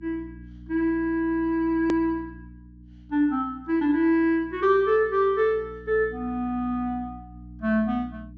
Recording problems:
low-pass filter; nothing above 8 kHz
hum; 60 Hz, harmonics up to 300 Hz, SNR 20 dB
click at an edit; at 2 s

